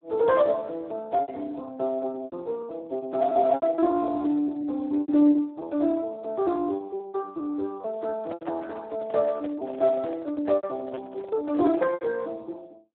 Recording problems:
phone line; 240 Hz to 3.2 kHz, Speex
packet loss; 11% of the sound replaced, filled with repeated pitch periods
microphone handling noise; from 8 to 12 s; peak -7 dB vs average level

